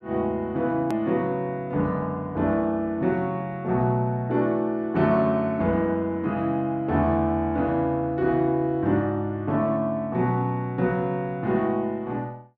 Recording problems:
click at an edit; at 1 s

